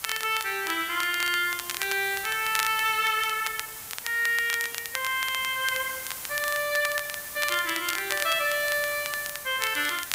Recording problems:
hiss; slope 0 dB per octave, SNR 9 dB
crackling; vinyl, SNR 9 dB

